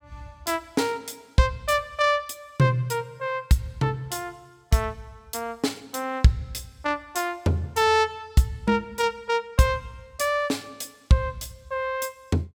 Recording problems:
none

